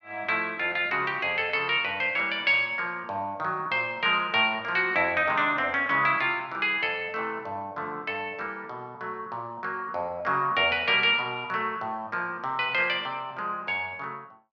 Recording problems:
none

